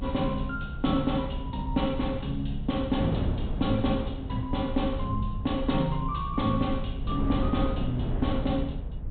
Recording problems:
low-pass filter; nothing above 4 kHz
rumble; below 82 Hz, SNR 7 dB
wind on the microphone; below 260 Hz, SNR 8 dB

